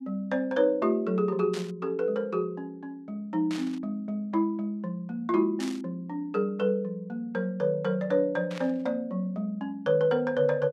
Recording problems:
static burst; 4 times, first at 1.5 s; peak -7 dB vs average level

